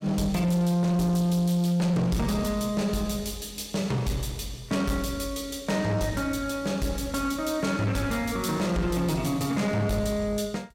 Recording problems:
distorted audio; soft clipping, signal-to-distortion ratio 10 dB

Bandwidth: 16 kHz